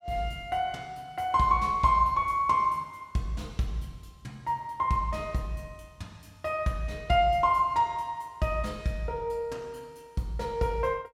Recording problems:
none

